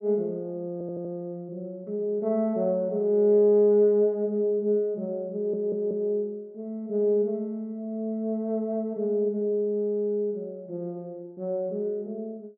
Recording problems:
stutter; at 0.5 s and at 5.5 s

